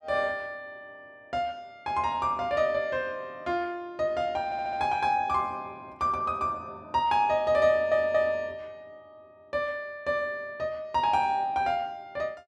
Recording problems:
stutter; at 4.5 s and at 7.5 s

